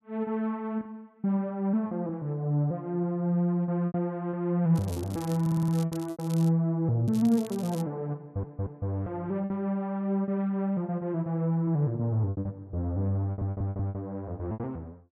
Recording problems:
packet loss; 5% of the sound replaced, filled with repeated pitch periods
crackling; from 5 to 6.5 s and at 7 s; loose cable, SNR 19 dB
audio stuttering; at 5.5 s, at 8 s and at 13 s

